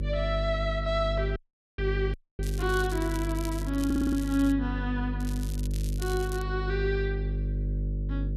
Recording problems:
electrical hum; 50 Hz, harmonics up to 450 Hz, SNR 2 dB
dropout; at 1.5 s and at 2 s
crackle; from 2 to 4.5 s and from 5 to 6.5 s; loose cable, SNR 14 dB
stutter; at 4 s

